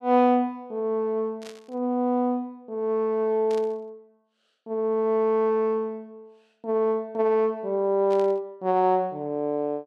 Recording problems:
static burst; at 1.5 s, at 3.5 s and at 8 s; peak -15 dB vs average level

